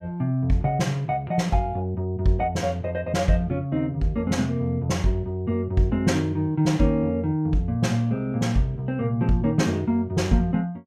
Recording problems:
none

